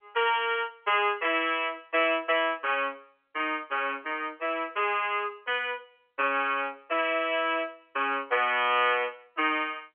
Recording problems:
phone line; 280 Hz to 3.3 kHz, G.711

